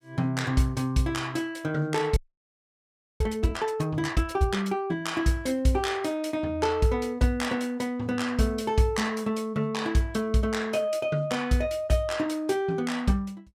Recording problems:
audio freezing; at 2 s for 1 s

